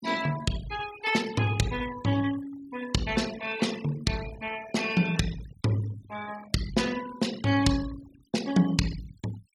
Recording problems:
noise reduction artefacts; signal-to-artefact ratio 14 dB

